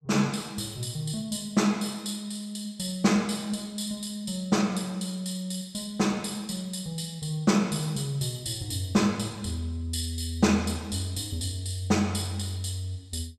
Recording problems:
none

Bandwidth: 13 kHz